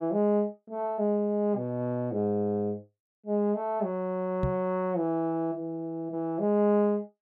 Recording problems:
knock on the microphone; at 4.5 s; peak +2 dB vs average level

